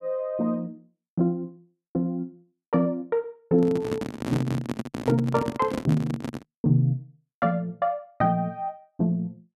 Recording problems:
microphone handling noise; from 3.5 to 6.5 s; peak +2 dB vs average level

